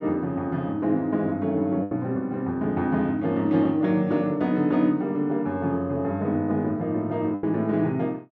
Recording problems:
packet loss; 2% of the sound replaced, filled with the last packet

